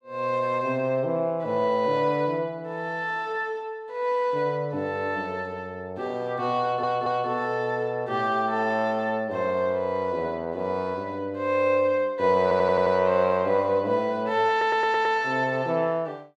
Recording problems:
stutter; at 6.5 s, at 12 s and at 15 s

